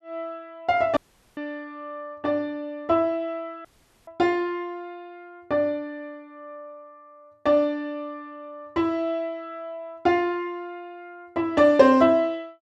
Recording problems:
dropout; at 1 s and at 3.5 s

